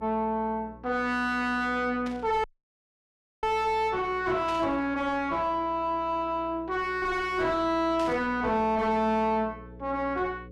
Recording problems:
distortion; soft clipping, signal-to-distortion ratio 3 dB
hum; 60 Hz, harmonics up to 540 Hz, SNR 21 dB
static burst; at 2 s, at 4.5 s and at 8 s; peak -10 dB vs average level
dropout; at 2.5 s for 1 s

